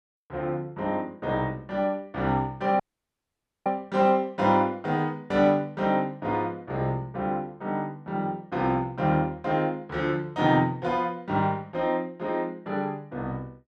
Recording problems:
audio cutting out; at 3 s for 1 s

